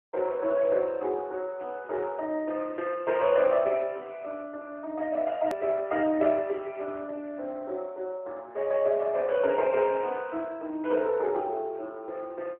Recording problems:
phone line; 260 Hz to 3 kHz, AMR-NB
edit click; at 5.5 s

